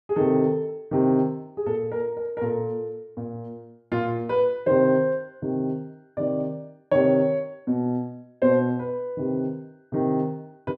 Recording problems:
none

